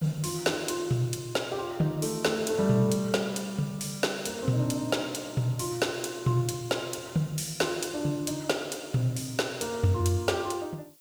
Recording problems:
hiss; SNR 26 dB

